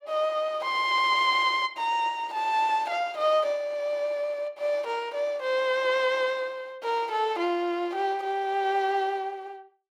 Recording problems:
none

